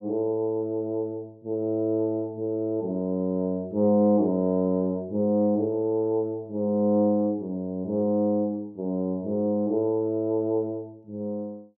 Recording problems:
none

